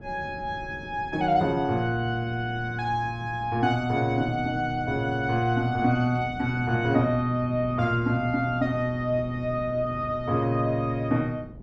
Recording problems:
wind noise; below 270 Hz, SNR 16 dB

